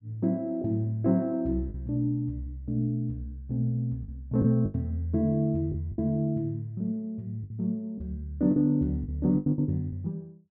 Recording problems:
packet loss; 6% of the sound replaced, filled with the last packet

